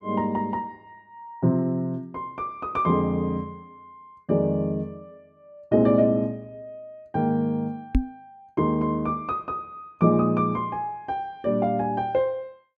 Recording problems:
knock on the microphone; at 8 s; peak +7 dB vs average level

